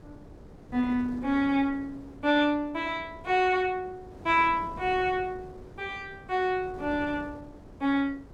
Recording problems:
wind noise; below 430 Hz, SNR 19 dB

